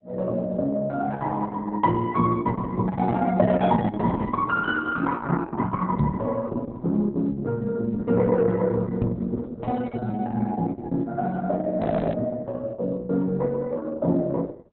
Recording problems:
lossy codec; Opus, log-spectral distance 3 dB
knock on the microphone; at 6 s and at 9 s; peak +8 dB vs average level
frozen audio; at 12 s

